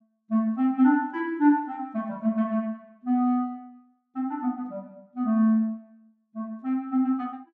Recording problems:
none

